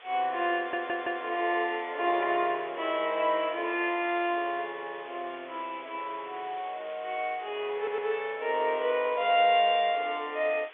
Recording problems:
telephone audio; 320 Hz to 3.6 kHz, G.711
background hiss; SNR 20 dB
stutter; at 0.5 s and at 8 s

